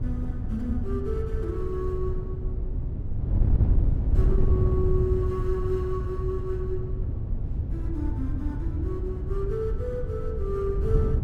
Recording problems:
wind on the microphone; below 100 Hz, SNR -4 dB

